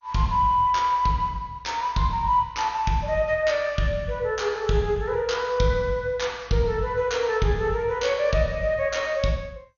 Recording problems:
lossy compression; MP2, log-spectral distance 2 dB, nothing above 6.7 kHz

